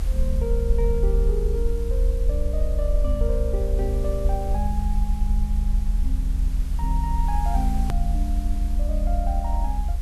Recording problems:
background hiss; slope -3 dB per octave, SNR 15 dB
rumble; below 62 Hz, strongest tone 38 Hz, SNR -6 dB
click at an edit; at 8 s

